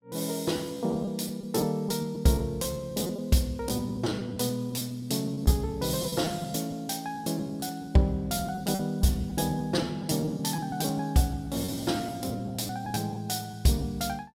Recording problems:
lost packets; 11% of the sound replaced, filled with repeated pitch periods

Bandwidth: 16 kHz